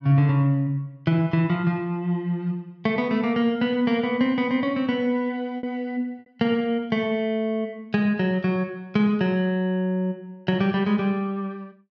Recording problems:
packet loss; 0.7% of the sound replaced, filled with repeated pitch periods

